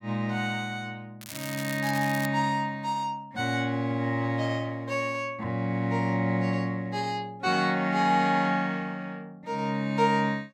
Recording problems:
crackle; from 1 to 2.5 s; loose cable, SNR 12 dB

